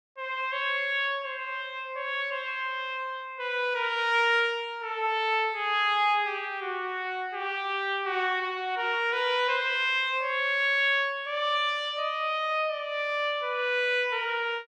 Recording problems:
none

